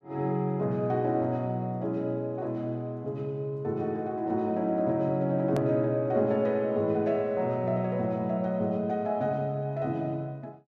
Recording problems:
click at an edit; at 5.5 s

